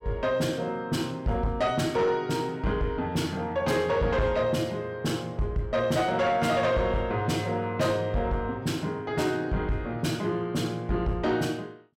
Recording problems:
distorted audio; soft clipping, signal-to-distortion ratio 12 dB

